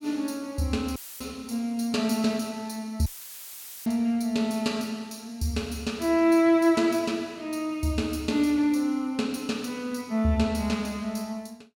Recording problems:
dropout; at 1 s and at 3 s for 1 s; filled with static

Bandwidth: 17 kHz